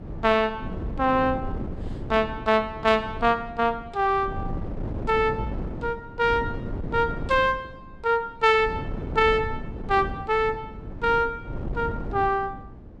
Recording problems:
wind noise; below 270 Hz, SNR 11 dB

